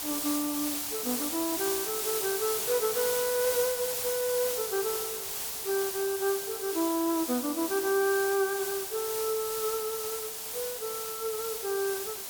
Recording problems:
background hiss; SNR 1 dB

